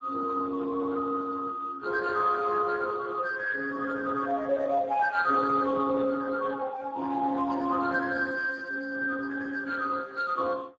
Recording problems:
lossy codec; Speex, log-spectral distance 4 dB

